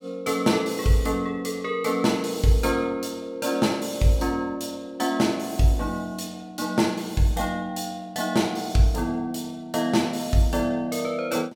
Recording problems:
none

